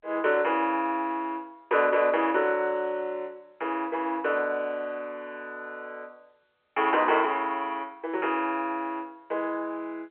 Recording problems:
telephone audio; 340 Hz to 3.2 kHz, G.711

